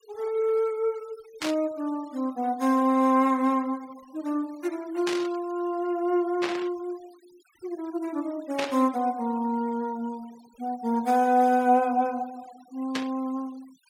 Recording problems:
denoising artefacts; signal-to-artefact ratio 25 dB
burst of static; 5 times, first at 1.5 s; peak 0 dB vs average level

